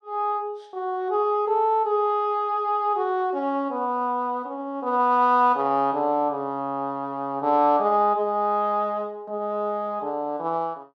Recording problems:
none

